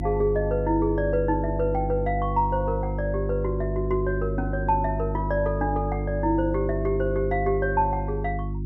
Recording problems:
electrical hum; 50 Hz, harmonics up to 350 Hz, SNR 4 dB

